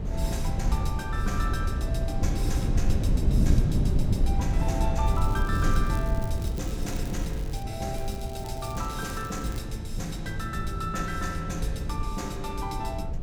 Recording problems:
low-frequency rumble; below 96 Hz, SNR -2 dB
wind on the microphone; below 160 Hz, SNR -1 dB
crackle; from 5 to 7.5 s and from 8 to 9.5 s; loose cable, SNR 15 dB

